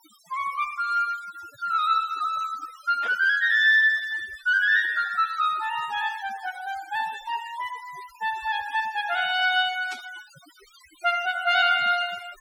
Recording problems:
denoising artefacts; signal-to-artefact ratio 20 dB
static burst; at 3 s and at 10 s; peak -11 dB vs average level

